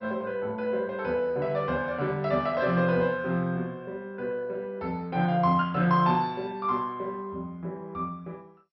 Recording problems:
lossy codec; MP2, log-spectral distance 2 dB, nothing above 4.9 kHz

